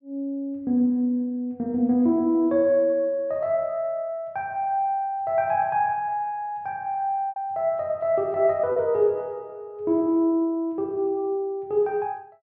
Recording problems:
lost packets; 1% of the sound replaced, filled with repeated pitch periods

